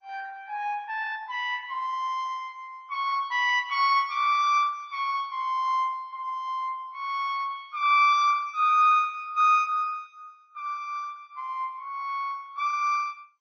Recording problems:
codec artefacts; MP2, then MP3, log-spectral distance 2 dB, nothing above 5.5 kHz

